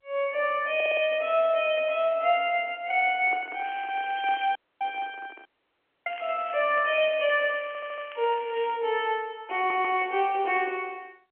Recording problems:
telephone audio; 240 Hz to 3.2 kHz, G.711
stutter; at 1 s, at 7.5 s and at 9.5 s
microphone handling noise; from 3 to 6 s; peak -11 dB vs average level
crackling; at 3.5 s and from 6 to 8.5 s; loose cable, SNR 22 dB
dropout; at 4.5 s and at 5.5 s for 0.5 s

